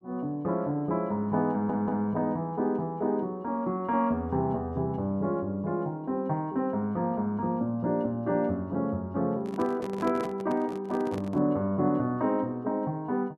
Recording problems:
audio stuttering; at 1.5 s
handling noise; from 9.5 to 11 s; peak -5 dB vs average level

